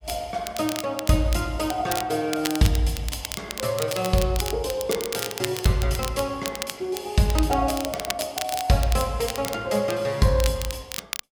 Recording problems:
crackle; vinyl, SNR 8 dB

